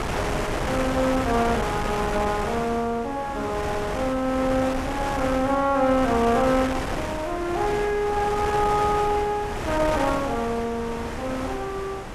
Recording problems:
wind noise; below 1.5 kHz, SNR 5 dB

